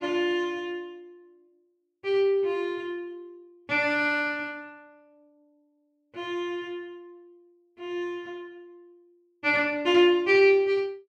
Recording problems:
none

